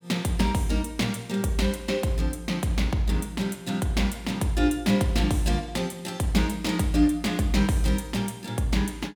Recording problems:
none

